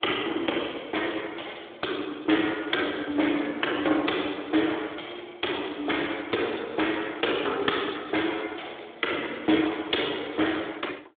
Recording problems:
telephone audio; 260 Hz to 3.6 kHz, Speex

